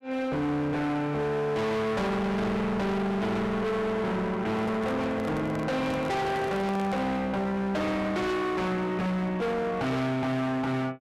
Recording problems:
distorted audio; hard clipping, signal-to-distortion ratio 6 dB
handling noise; from 4.5 to 7 s; peak -3 dB vs average level

